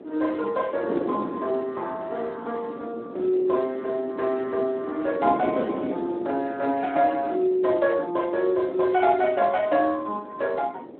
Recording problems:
telephone audio; 220 Hz to 2.8 kHz, Speex
wind on the microphone; below 500 Hz, SNR 10 dB

